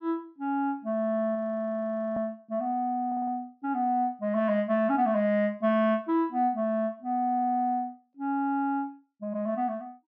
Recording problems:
treble missing; nothing above 6.4 kHz
frozen audio; at 1.5 s for 1 s
audio stuttering; at 3 s and at 7.5 s

